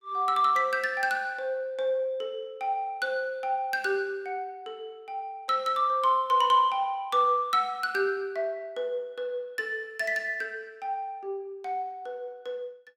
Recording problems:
none

